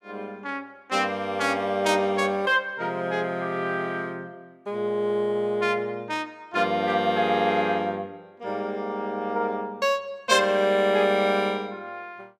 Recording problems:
none

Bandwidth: 15.5 kHz